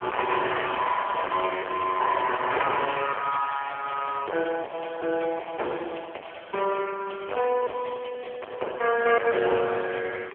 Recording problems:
telephone audio; 370 Hz to 3.3 kHz, AMR-NB
distorted audio; hard clipping, uneven, signal-to-distortion ratio 7 dB

